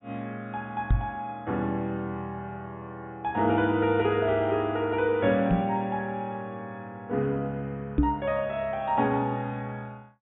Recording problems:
low-pass filter; nothing above 4 kHz
microphone bump; at 1 s, at 5.5 s and at 8 s; peak +8 dB vs average level

